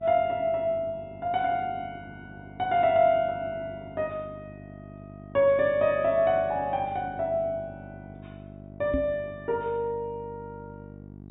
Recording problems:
low-pass filter; nothing above 4 kHz
mains hum; 50 Hz, harmonics up to 800 Hz, SNR 18 dB
knock on the microphone; at 9 s; peak +1 dB vs average level

